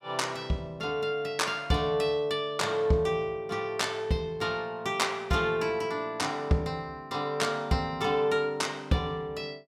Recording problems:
none

